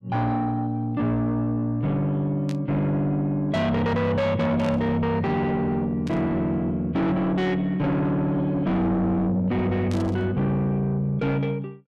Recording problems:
distortion; soft clipping, signal-to-distortion ratio 8 dB
burst of static; 4 times, first at 2.5 s; peak -12 dB vs average level

